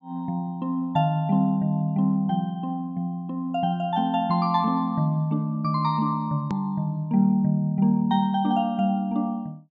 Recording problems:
treble cut off; nothing above 7.5 kHz
edit click; at 6.5 s

